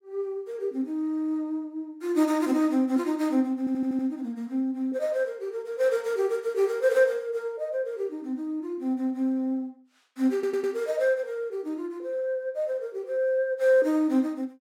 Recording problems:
stutter; at 3.5 s and at 10 s

